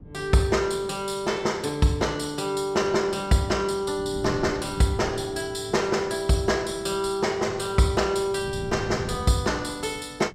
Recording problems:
wind noise; below 210 Hz, SNR 15 dB

